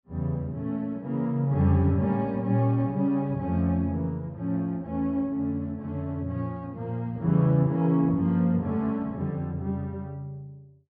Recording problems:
treble missing; nothing above 5 kHz

